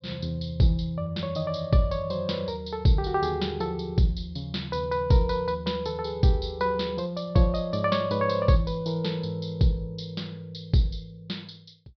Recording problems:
treble missing; nothing above 5.5 kHz

